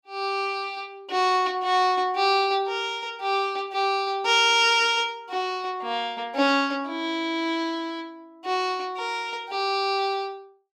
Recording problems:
none

